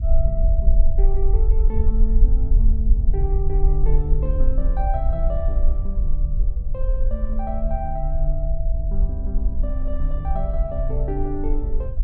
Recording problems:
hum; 50 Hz, harmonics up to 550 Hz, SNR 17 dB
rumble; below 48 Hz, strongest tone 20 Hz, SNR -8 dB

